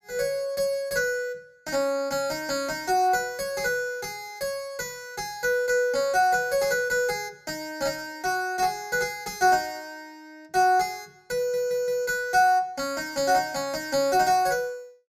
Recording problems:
stutter; at 11 s

